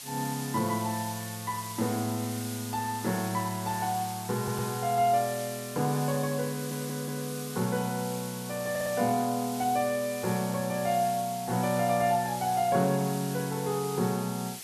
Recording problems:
background hiss; slope +2 dB per octave, SNR 10 dB
stutter; at 4.5 s, at 6.5 s and at 8.5 s

